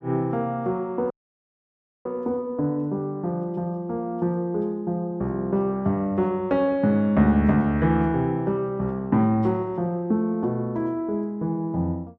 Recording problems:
dropout; at 1 s for 1 s

